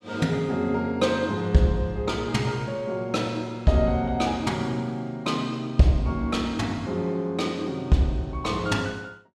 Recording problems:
none

